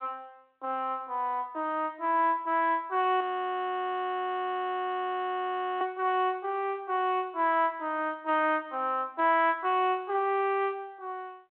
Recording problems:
phone line; 260 Hz to 3.5 kHz, G.726
frozen audio; at 3 s for 2.5 s

